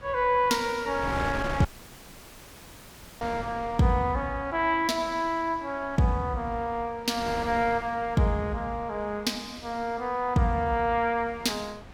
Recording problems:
wind on the microphone; below 1.2 kHz, SNR 14 dB
dropout; at 1.5 s for 1.5 s

